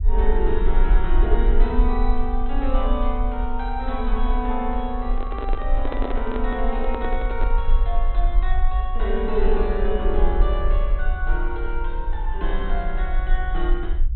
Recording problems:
treble cut off; nothing above 4.1 kHz
low-frequency rumble; below 42 Hz, strongest tone 20 Hz, SNR -3 dB
microphone handling noise; from 5 to 7.5 s; peak +2 dB vs average level

